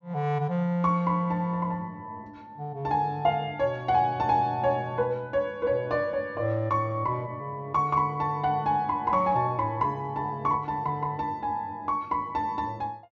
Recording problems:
treble cut off; nothing above 7.4 kHz

